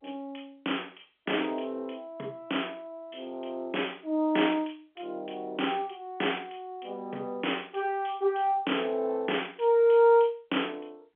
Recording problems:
telephone audio; 220 Hz to 3.4 kHz, G.711

